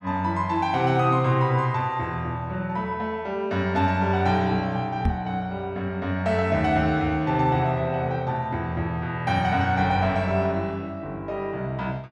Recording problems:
knock on the microphone; at 5 s; peak +4 dB vs average level

